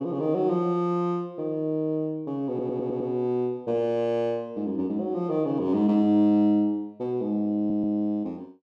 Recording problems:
stutter; at 2.5 s and at 7.5 s

